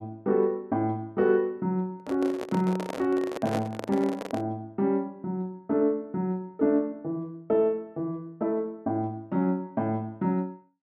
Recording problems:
microphone handling noise; from 2 to 4.5 s; peak 0 dB vs average level

